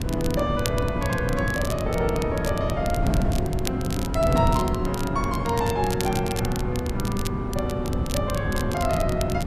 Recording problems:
wind noise; below 220 Hz, SNR 2 dB
crackle; vinyl, SNR 10 dB

